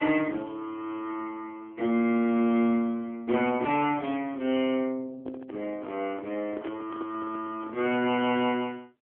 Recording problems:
phone line; 240 Hz to 3.3 kHz, AMR-NB
microphone handling noise; from 5 to 8 s; peak -6 dB vs average level

